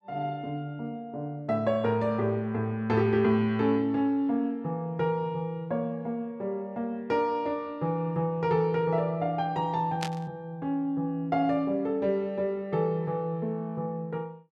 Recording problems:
burst of static; at 10 s; peak -1 dB vs average level

